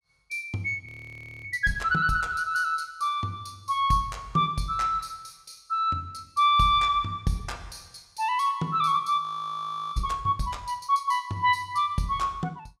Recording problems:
frozen audio; at 1 s for 0.5 s and at 9 s for 0.5 s

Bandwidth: 16 kHz